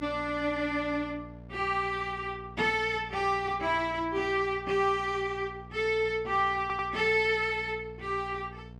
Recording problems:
hum; 60 Hz, harmonics up to 900 Hz, SNR 18 dB
stutter; at 6.5 s

